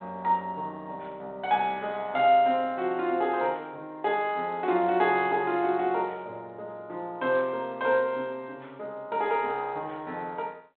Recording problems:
telephone audio; 280 Hz to 3.7 kHz, G.726

